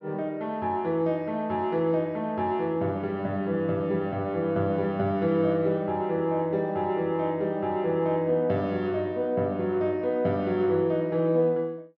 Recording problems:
treble cut off; nothing above 6.5 kHz

